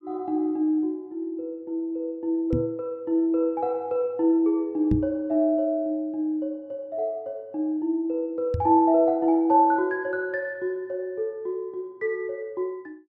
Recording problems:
microphone bump; at 2.5 s, at 5 s and at 8.5 s; peak +4 dB vs average level

